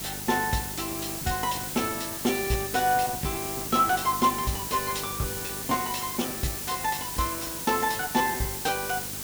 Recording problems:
hum; 50 Hz, harmonics up to 800 Hz, SNR 16 dB
background hiss; SNR 4 dB
lost packets; 10% of the sound replaced, filled with repeated pitch periods

